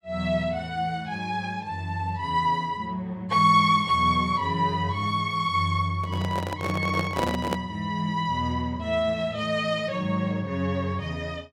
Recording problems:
handling noise; from 6 to 7.5 s; peak +2 dB vs average level

